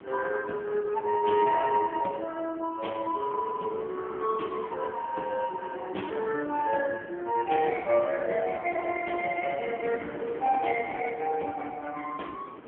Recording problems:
phone line; 240 Hz to 2.8 kHz, AMR-NB
wind noise; below 920 Hz, SNR 15 dB

